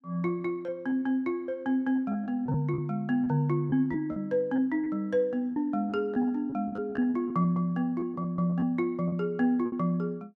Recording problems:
packet loss; 9% of the sound replaced, filled with repeated pitch periods

